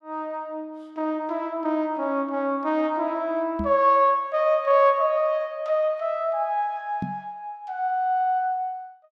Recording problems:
knock on the microphone; at 3.5 s and at 7 s; peak -2 dB vs average level

